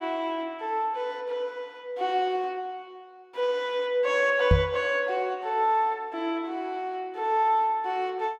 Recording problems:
microphone thump; at 4.5 s; peak +9 dB vs average level

